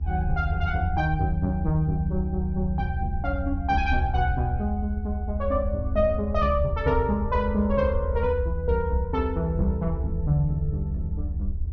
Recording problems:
low-pass filter; nothing above 6.4 kHz
low-frequency rumble; below 78 Hz, SNR 3 dB

